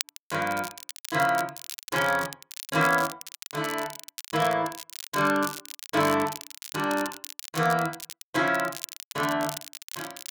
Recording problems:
crackling; vinyl, SNR 11 dB

